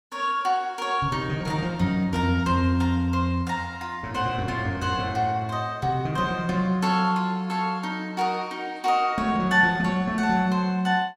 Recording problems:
none

